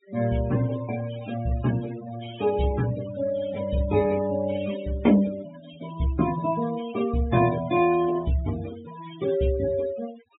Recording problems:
low-pass filter; nothing above 4 kHz
denoising artefacts; signal-to-artefact ratio 15 dB

